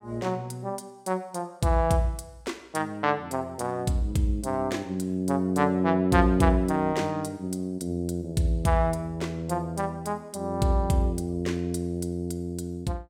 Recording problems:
none

